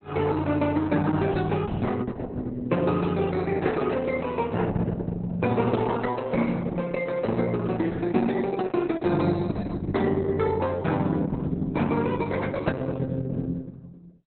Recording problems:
lossy codec; Opus, log-spectral distance 4 dB, nothing above 4.1 kHz

